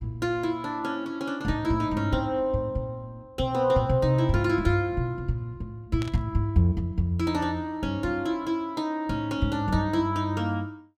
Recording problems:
static burst; at 6 s; peak -8 dB vs average level

